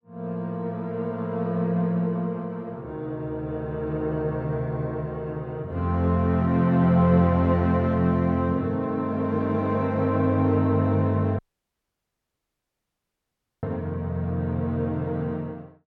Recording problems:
dropout; at 11 s for 2 s

